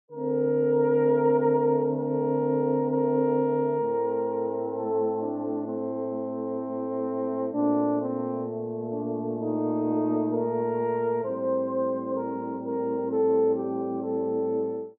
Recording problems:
none

